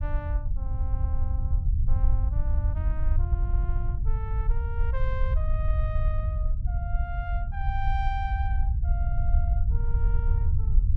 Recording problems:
rumble; below 72 Hz, SNR -12 dB

